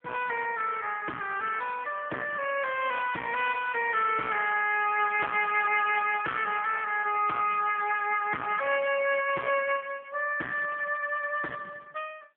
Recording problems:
telephone audio; 260 Hz to 3.3 kHz, AMR-NB
distortion; hard clipping, uneven, signal-to-distortion ratio 10 dB

